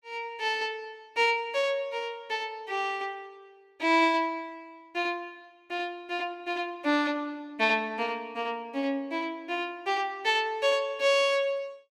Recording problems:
none

